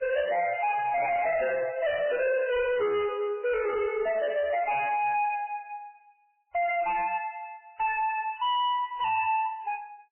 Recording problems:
lossy compression; MP3, log-spectral distance 3 dB, nothing above 2.7 kHz
distorted audio; hard clipping, uneven, signal-to-distortion ratio 6 dB

